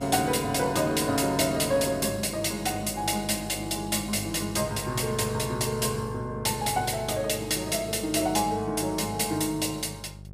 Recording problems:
hum; 50 Hz, harmonics up to 750 Hz, SNR 16 dB

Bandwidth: 15.5 kHz